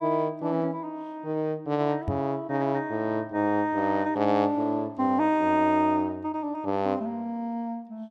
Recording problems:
microphone bump; at 2 s; peak 0 dB vs average level

